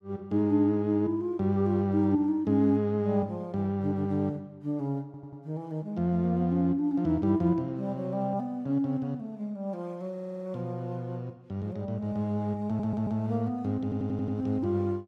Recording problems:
audio stuttering; 4 times, first at 5 s

